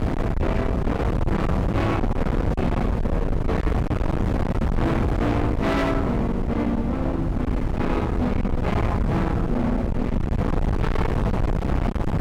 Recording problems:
distorted audio; hard clipping, signal-to-distortion ratio 7 dB
wind noise; below 290 Hz, SNR 0 dB

